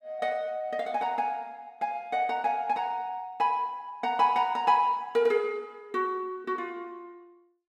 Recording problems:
none

